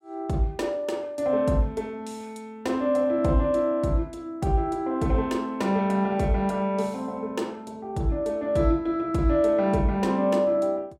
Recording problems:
none

